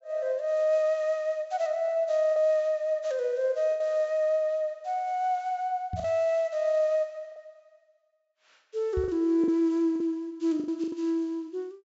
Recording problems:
treble cut off; nothing above 8 kHz
lost packets; 4% of the sound replaced, filled with the last packet
microphone thump; at 6 s and at 9 s; peak -3 dB vs average level

